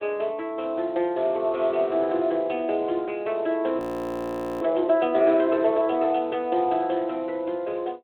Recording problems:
phone line; 280 Hz to 3.7 kHz, Speex
frozen audio; at 4 s for 1 s

